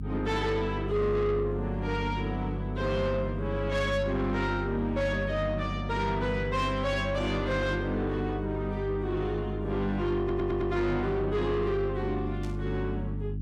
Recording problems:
distorted audio; soft clipping, signal-to-distortion ratio 10 dB
electrical hum; 50 Hz, harmonics up to 300 Hz, SNR 5 dB
stutter; at 10 s
static burst; at 12 s; peak -14 dB vs average level

